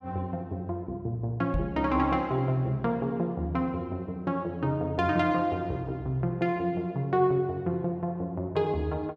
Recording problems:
microphone bump; at 1.5 s; peak +2 dB vs average level

